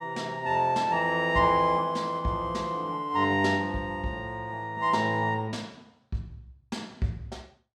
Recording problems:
none

